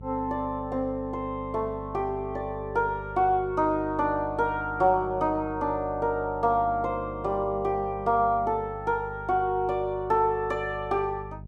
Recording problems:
hum; 50 Hz, harmonics up to 450 Hz, SNR 15 dB

